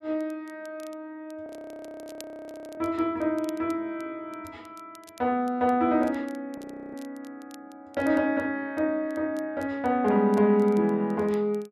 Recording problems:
crackling; vinyl, SNR 29 dB
frozen audio; at 1.5 s for 1.5 s and at 6.5 s

